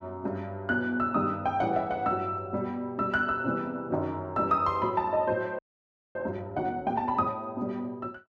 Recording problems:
audio freezing; at 5.5 s for 0.5 s

